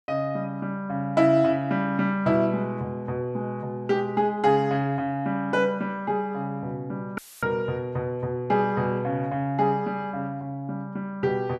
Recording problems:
dropout; at 7 s; filled with static

